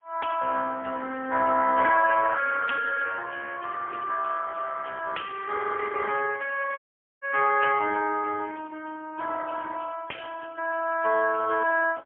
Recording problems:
phone line; 220 Hz to 2.7 kHz, AMR-NB, then MP3
dropout; at 7 s

